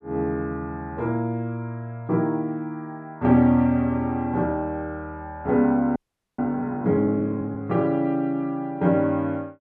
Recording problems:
audio freezing; at 6 s

